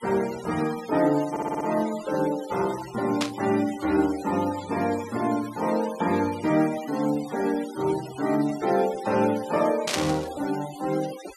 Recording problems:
denoising artefacts; signal-to-artefact ratio 15 dB
audio stuttering; at 1.5 s
burst of static; at 3 s and at 10 s; peak +4 dB vs average level

